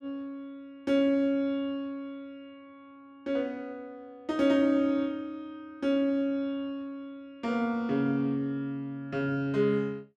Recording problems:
none

